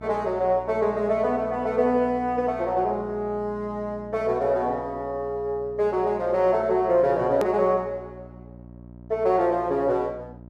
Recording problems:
electrical hum; 60 Hz, harmonics up to 960 Hz, SNR 20 dB
click at an edit; at 7.5 s

